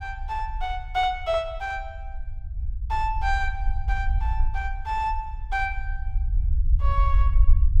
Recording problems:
low-frequency rumble; below 60 Hz, SNR -1 dB

